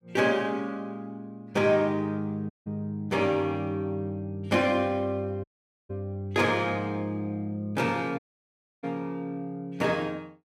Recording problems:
audio cutting out; at 2.5 s, at 5.5 s and at 8 s for 0.5 s

